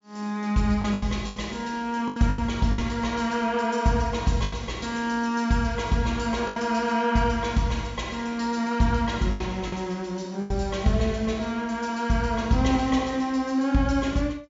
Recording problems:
treble missing; nothing above 7.4 kHz
packet loss; 5% of the sound replaced, filled with the last packet

